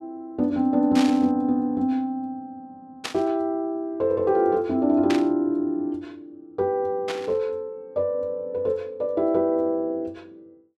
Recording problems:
static burst; 4 times, first at 1 s; peak -1 dB vs average level

